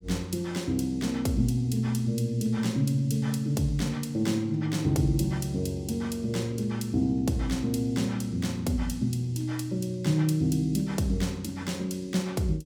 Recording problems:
none

